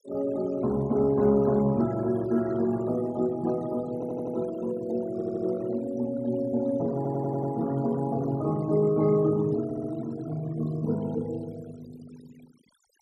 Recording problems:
noise reduction artefacts; signal-to-artefact ratio 22 dB
audio stuttering; 4 times, first at 4 s

